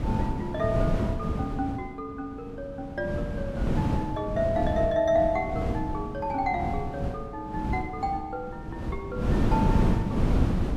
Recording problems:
wind noise; below 250 Hz, SNR -1 dB

